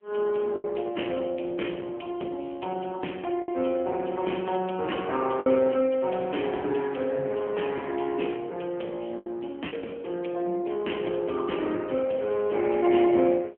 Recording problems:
telephone audio; 240 Hz to 3.2 kHz, AMR-NB
lost packets; 2% of the sound replaced, filled with the last packet

